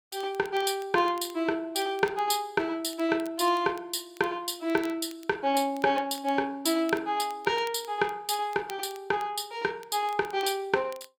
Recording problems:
crackling; vinyl, SNR 24 dB

